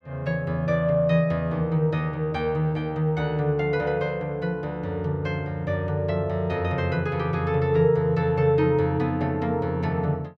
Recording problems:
none

